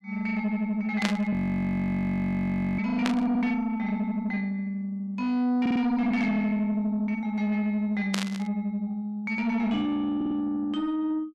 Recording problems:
distortion; soft clipping, signal-to-distortion ratio 10 dB
static burst; at 1 s, at 3 s and at 8 s; peak +3 dB vs average level
frozen audio; at 1.5 s for 1.5 s
audio stuttering; at 5.5 s and at 10 s

